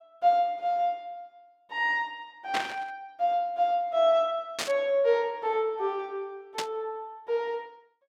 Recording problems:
static burst; at 2.5 s, at 4.5 s and at 6.5 s; peak +2 dB vs average level

